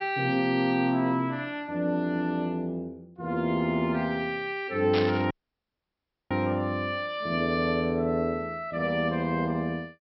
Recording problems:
treble cut off; nothing above 5.6 kHz
static burst; at 5 s; peak 0 dB vs average level
audio cutting out; at 5.5 s for 1 s

